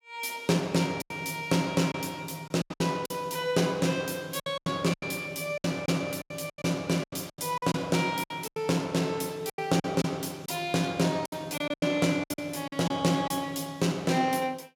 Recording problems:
packet loss; 11% of the sound replaced, filled with silence

